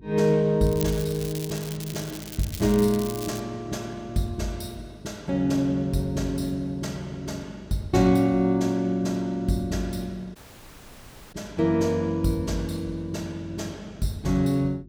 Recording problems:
hum; 50 Hz, harmonics up to 400 Hz, SNR 23 dB
crackle; from 0.5 to 3.5 s; loose cable, SNR 12 dB
audio cutting out; at 10 s for 1 s

